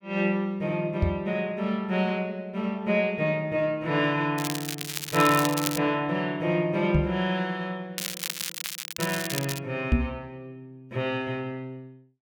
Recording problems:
knock on the microphone; at 1 s, at 7 s and at 10 s; peak +9 dB vs average level
crackle; from 4.5 to 6 s and from 8 to 9.5 s; loose cable, SNR 5 dB

